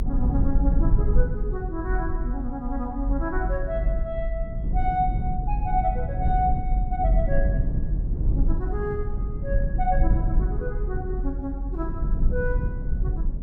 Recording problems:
rumble; below 66 Hz, SNR -3 dB

